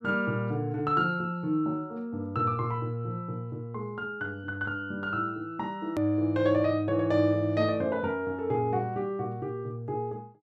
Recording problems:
click at an edit; at 6 s

